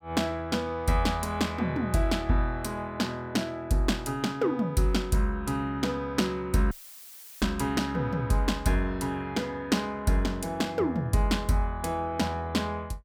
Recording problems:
dropout; at 6.5 s for 0.5 s; filled with static

